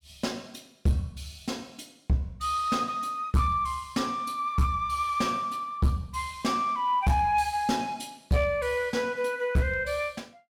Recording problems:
distortion; hard clipping, uneven, signal-to-distortion ratio 10 dB

